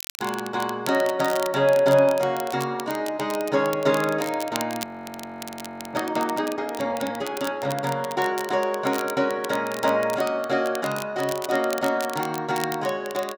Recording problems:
crackling; vinyl, SNR 14 dB
frozen audio; at 5 s for 1 s

